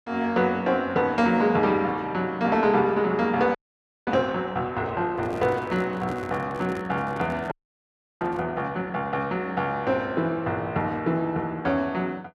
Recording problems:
audio freezing; at 3.5 s for 0.5 s and at 7.5 s for 0.5 s
handling noise; from 5 to 8.5 s; peak -5 dB vs average level

